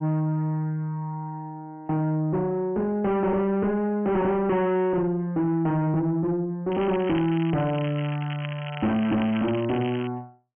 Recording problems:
treble cut off; nothing above 3.2 kHz
distorted audio; soft clipping, signal-to-distortion ratio 7 dB
crackle; from 6.5 s on; loose cable, SNR 15 dB

